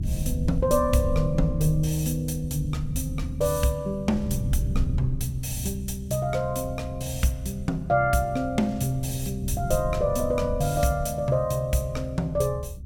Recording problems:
rumble; below 110 Hz, SNR 7 dB

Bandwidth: 17 kHz